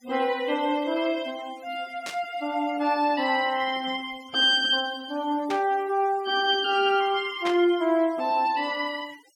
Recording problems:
denoising artefacts; signal-to-artefact ratio 22 dB
static burst; at 2 s, at 5.5 s and at 7.5 s; peak -4 dB vs average level

